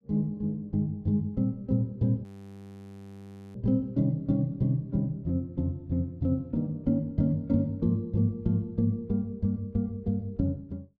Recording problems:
frozen audio; at 2 s for 1.5 s

